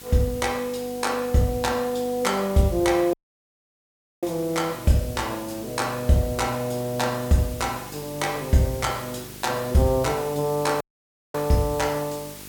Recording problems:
hum; 50 Hz, harmonics up to 950 Hz, SNR 21 dB
background hiss; slope +1 dB per octave, SNR 16 dB
audio cutting out; at 3 s for 1 s and at 11 s for 0.5 s

